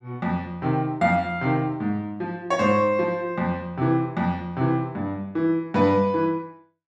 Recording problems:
none

